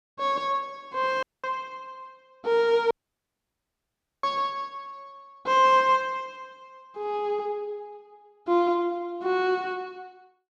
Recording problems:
audio cutting out; at 1 s and at 3 s for 1.5 s

